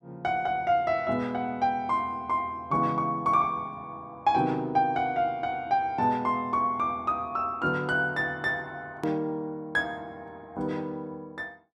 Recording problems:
edit click; at 9 s

